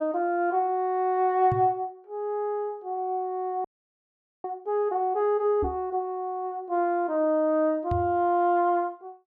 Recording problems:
knock on the microphone; at 1.5 s, at 5.5 s and at 8 s; peak -1 dB vs average level
frozen audio; at 3.5 s for 1 s

